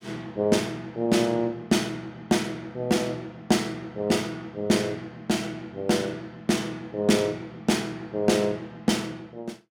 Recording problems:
none

